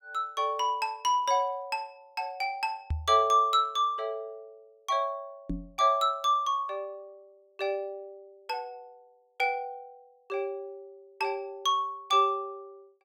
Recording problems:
microphone thump; at 3 s and at 5.5 s; peak +1 dB vs average level

